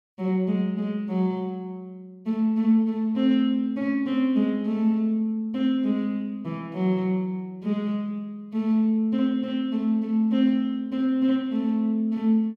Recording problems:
none

